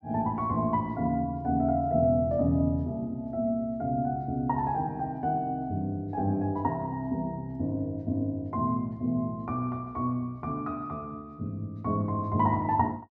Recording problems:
none

